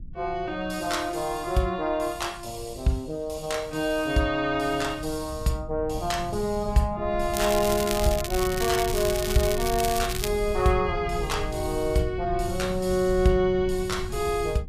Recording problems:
low-frequency rumble; below 110 Hz, SNR 11 dB
crackle; from 7.5 to 10 s; loose cable, SNR 6 dB

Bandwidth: 15 kHz